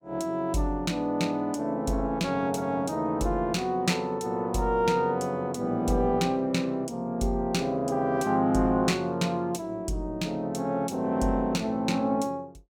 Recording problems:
none

